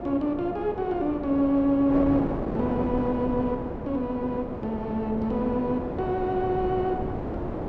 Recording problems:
wind noise; below 570 Hz, SNR 6 dB

